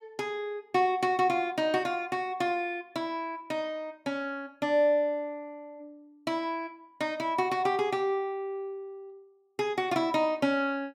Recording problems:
none

